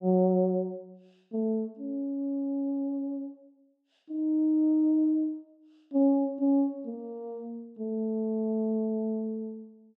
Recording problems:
none

